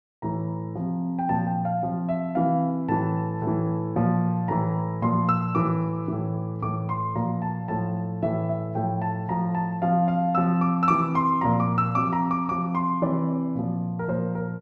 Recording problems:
none

